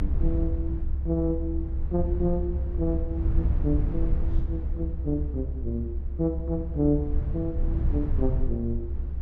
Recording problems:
rumble; below 70 Hz, SNR -1 dB

